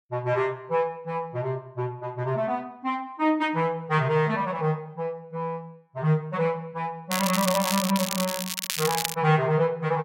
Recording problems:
crackle; from 7 to 9 s; loose cable, SNR 3 dB

